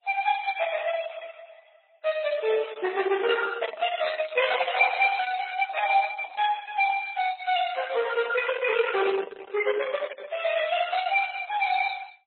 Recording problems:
lossy compression; Opus, then MP3, log-spectral distance 5 dB, nothing above 4 kHz

